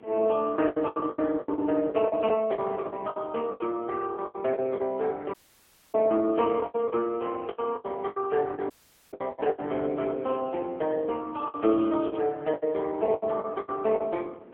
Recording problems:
telephone audio; 260 Hz to 3.4 kHz, AMR-NB
wind noise; below 550 Hz, SNR 20 dB
lost packets; 16% of the sound replaced, filled with the last packet
audio cutting out; at 5.5 s for 0.5 s and at 8.5 s
crackling; at 12 s; loose cable, SNR 23 dB

